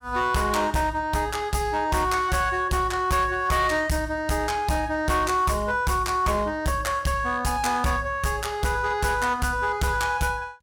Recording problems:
distortion; hard clipping, signal-to-distortion ratio 12 dB

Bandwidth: 17 kHz